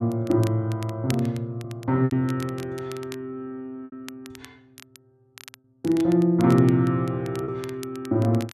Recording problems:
crackle; vinyl, SNR 21 dB
lost packets; 3% of the sound replaced, filled with repeated pitch periods

